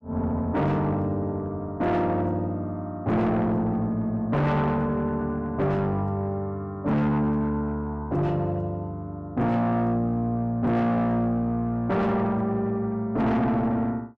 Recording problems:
distortion; soft clipping, signal-to-distortion ratio 7 dB

